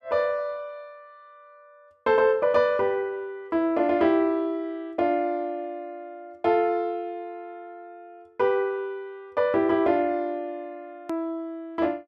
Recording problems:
edit click; at 11 s

